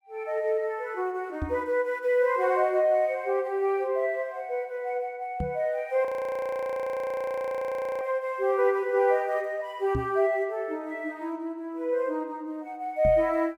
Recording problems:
knock on the microphone; 4 times, first at 1.5 s; peak 0 dB vs average level
frozen audio; at 6 s for 2 s

